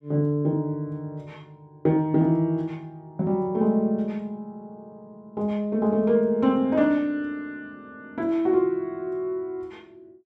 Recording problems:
none

